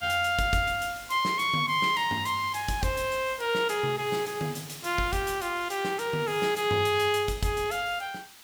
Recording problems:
background hiss; SNR 18 dB

